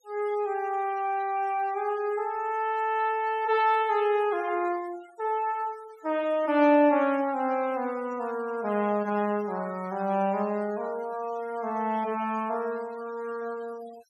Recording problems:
noise reduction artefacts; signal-to-artefact ratio 22 dB

